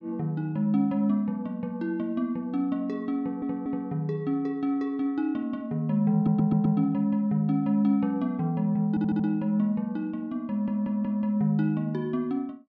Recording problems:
audio stuttering; 4 times, first at 3 s

